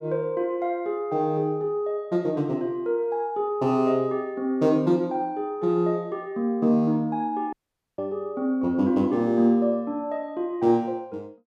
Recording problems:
dropout; at 7.5 s

